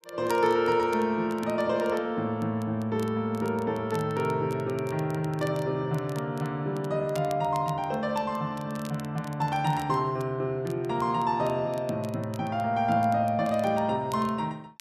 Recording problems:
crackle; vinyl, SNR 23 dB

